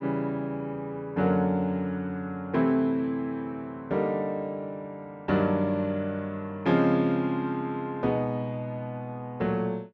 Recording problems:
none

